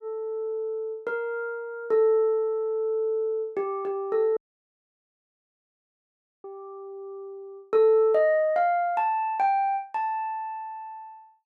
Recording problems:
audio cutting out; at 4.5 s for 2 s

